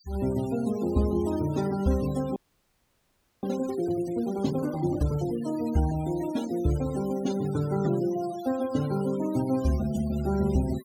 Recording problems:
denoising artefacts; signal-to-artefact ratio 17 dB
audio freezing; at 2.5 s for 1 s

